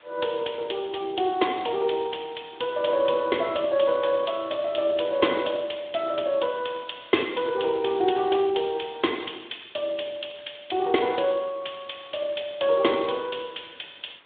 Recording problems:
telephone audio; 110 Hz to 3.7 kHz, Speex
hiss; SNR 28 dB

